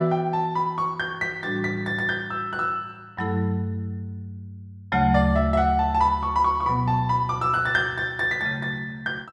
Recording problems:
none

